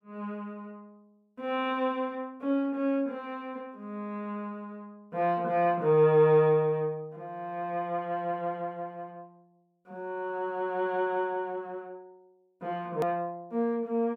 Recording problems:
edit click; at 13 s

